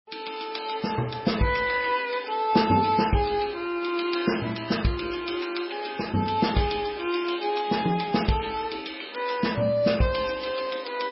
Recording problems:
lossy compression; MP3, log-spectral distance 6 dB, nothing above 5.5 kHz

